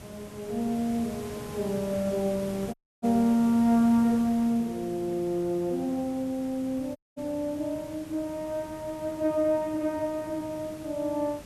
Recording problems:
hiss; slope -4 dB per octave, SNR 15 dB
audio cutting out; at 2.5 s and at 7 s

